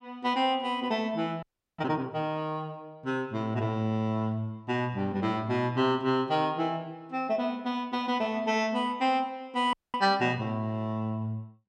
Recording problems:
audio freezing; at 1.5 s and at 9.5 s

